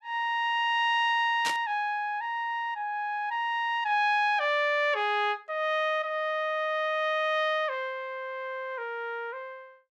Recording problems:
burst of static; at 1.5 s; peak 0 dB vs average level

